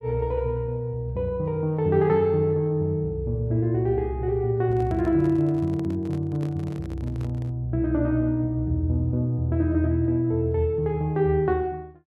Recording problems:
microphone handling noise; from 4.5 to 7.5 s; peak -10 dB vs average level

